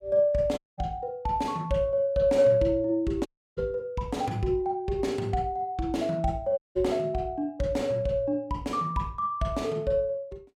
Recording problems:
audio cutting out; at 0.5 s, at 3.5 s and at 6.5 s

